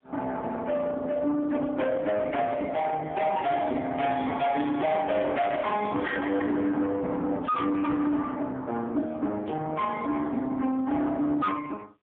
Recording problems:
phone line; 130 Hz to 3.8 kHz, AMR-NB, then MP3
distortion; soft clipping, signal-to-distortion ratio 6 dB
static burst; 4 times, first at 3.5 s; peak -15 dB vs average level

